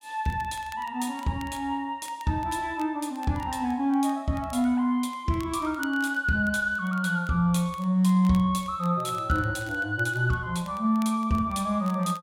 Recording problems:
crackle; vinyl, SNR 26 dB

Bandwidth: 16 kHz